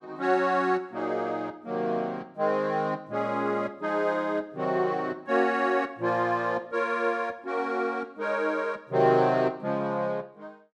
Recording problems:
none

